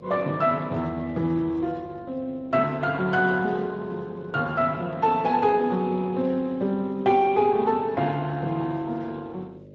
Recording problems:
lossy codec; Speex, log-spectral distance 2 dB
hum; 50 Hz, harmonics up to 600 Hz, SNR 22 dB

